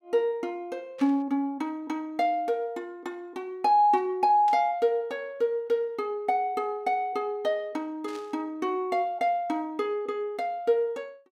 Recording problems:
static burst; at 1 s, at 4.5 s and at 8 s; peak -13 dB vs average level

